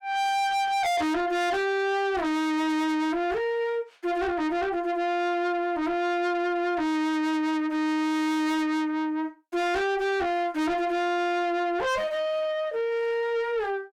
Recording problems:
distorted audio; soft clipping, signal-to-distortion ratio 7 dB

